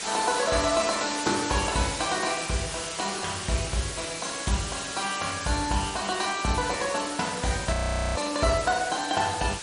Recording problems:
lossy compression; MP3, log-spectral distance 16 dB, nothing above 10.4 kHz
background hiss; slope 0 dB per octave, SNR 6 dB
audio freezing; at 7.5 s

